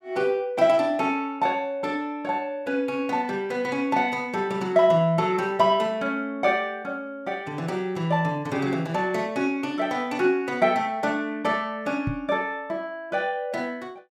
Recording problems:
knock on the microphone; at 12 s; peak 0 dB vs average level

